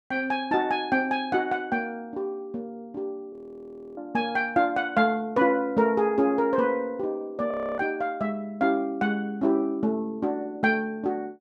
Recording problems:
audio freezing; at 3.5 s for 0.5 s and at 7.5 s

